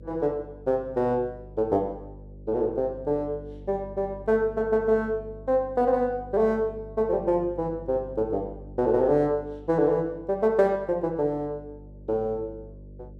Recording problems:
hum; 50 Hz, harmonics up to 600 Hz, SNR 19 dB

